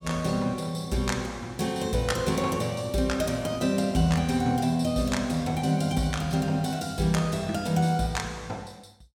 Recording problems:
none

